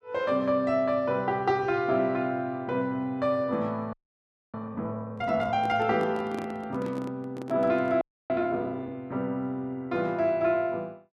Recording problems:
audio freezing; at 4 s for 0.5 s and at 8 s
microphone handling noise; from 5 to 8 s; peak -5 dB vs average level

